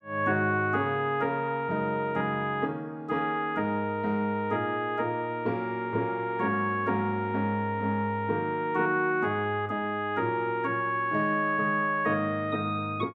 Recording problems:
none

